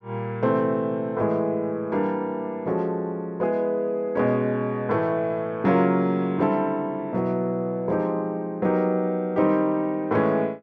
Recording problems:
none

